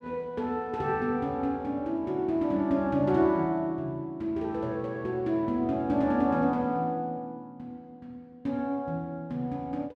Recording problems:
none

